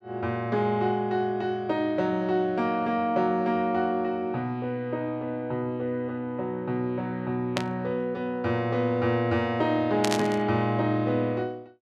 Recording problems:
static burst; at 7.5 s and at 10 s; peak +3 dB vs average level

